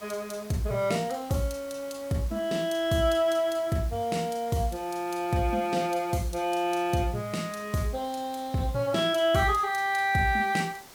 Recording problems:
hiss; slope -2 dB per octave, SNR 20 dB

